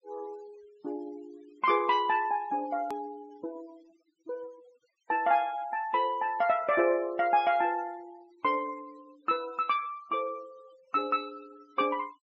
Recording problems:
treble missing; nothing above 8 kHz
denoising artefacts; signal-to-artefact ratio 24 dB
edit click; at 3 s

